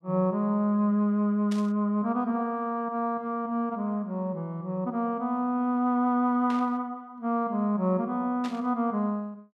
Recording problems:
burst of static; at 1.5 s, at 6.5 s and at 8.5 s; peak -9 dB vs average level

